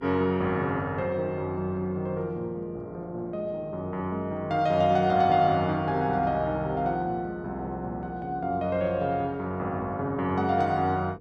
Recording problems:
electrical hum; 50 Hz, harmonics up to 500 Hz, SNR 24 dB

